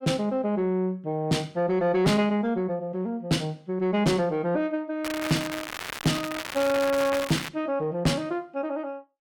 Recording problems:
distorted audio; soft clipping, signal-to-distortion ratio 7 dB
crackle; from 5 to 7.5 s; loose cable, SNR 8 dB

